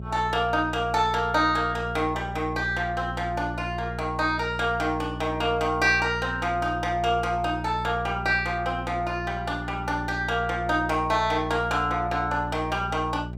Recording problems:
hum; 60 Hz, harmonics up to 600 Hz, SNR 10 dB

